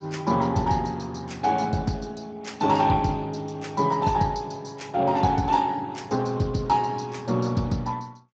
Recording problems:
lossy compression; Speex, log-spectral distance 5 dB

